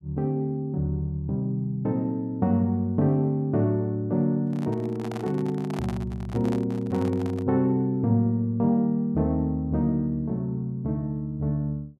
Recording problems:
microphone handling noise; from 4.5 to 7.5 s; peak -6 dB vs average level

